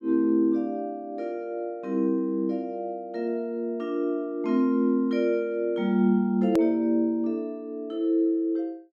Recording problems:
hard cut with a click; at 6.5 s

